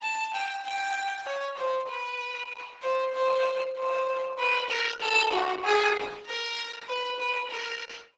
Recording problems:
lossy codec; Opus, log-spectral distance 6 dB, nothing above 7.1 kHz

